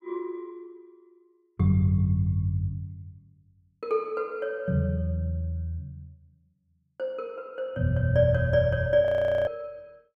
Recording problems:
frozen audio; at 9 s

